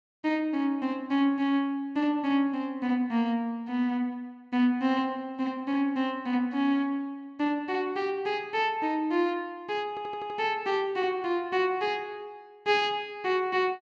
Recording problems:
audio stuttering; at 10 s

